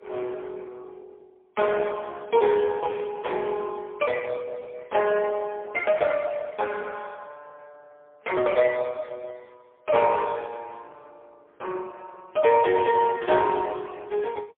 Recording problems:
phone line; 320 Hz to 3.3 kHz, AMR-NB, then MP3

